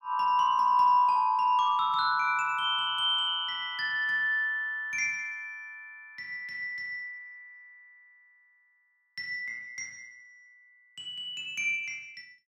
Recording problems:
none

